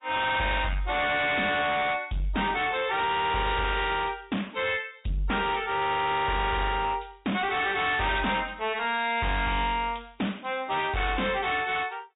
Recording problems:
treble missing; nothing above 3.8 kHz
lossy compression; MP3, log-spectral distance 6 dB
distortion; hard clipping, signal-to-distortion ratio 6 dB

